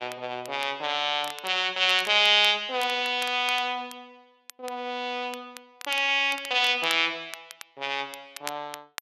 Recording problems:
crackling; vinyl, SNR 19 dB

